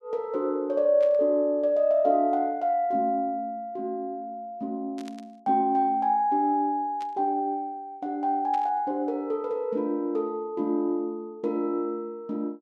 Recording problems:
burst of static; 4 times, first at 1 s; peak -14 dB vs average level

